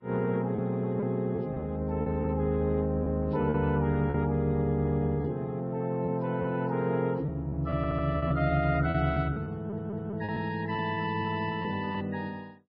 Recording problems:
codec artefacts; MP3, then Vorbis, log-spectral distance 2 dB, nothing above 4.6 kHz
packet loss; 6% of the sound replaced, filled with repeated pitch periods
stutter; at 8 s and at 9.5 s

